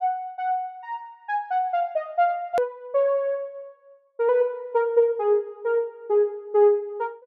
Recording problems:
hard cut with a click; at 2.5 s

